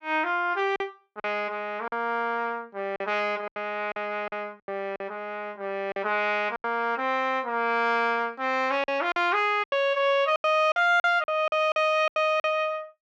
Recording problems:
packet loss; 9% of the sound replaced, filled with silence

